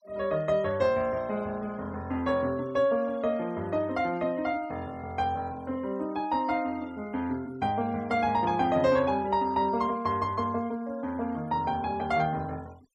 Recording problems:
noise reduction artefacts; signal-to-artefact ratio 25 dB

